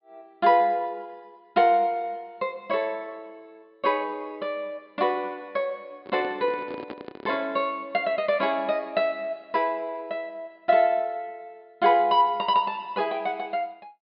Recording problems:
treble cut off; nothing above 5 kHz
handling noise; from 6 to 7.5 s; peak -7 dB vs average level

